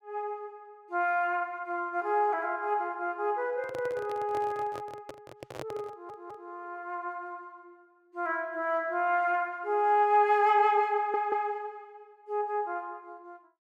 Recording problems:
microphone handling noise; from 3.5 to 6.5 s; peak -5 dB vs average level
audio stuttering; at 6 s and at 11 s

